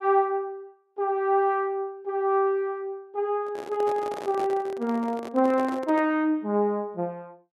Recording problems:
microphone handling noise; from 3.5 to 6 s; peak -7 dB vs average level

